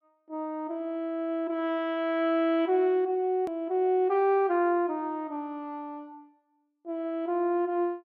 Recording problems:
edit click; at 3.5 s

